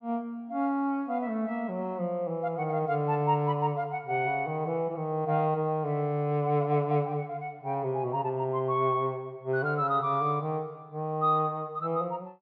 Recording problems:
none

